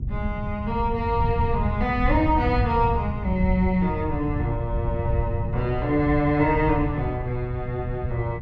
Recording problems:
rumble; below 120 Hz, SNR 4 dB

